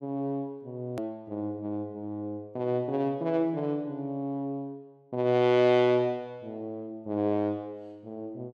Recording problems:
edit click; at 1 s

